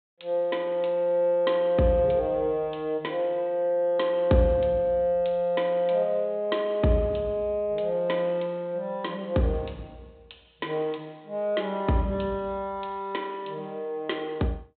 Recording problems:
treble missing; nothing above 4 kHz

